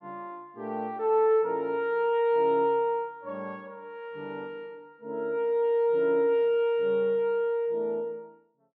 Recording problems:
none

